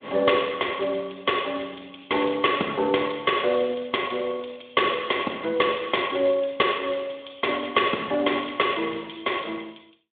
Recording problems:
phone line; 260 Hz to 3.5 kHz, Speex

